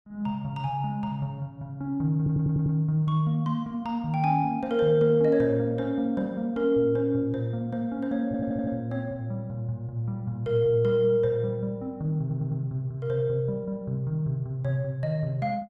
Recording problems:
stutter; at 2 s, at 8.5 s and at 12 s

